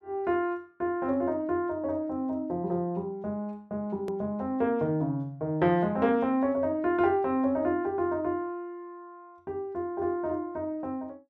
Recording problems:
click at an edit; at 4 s

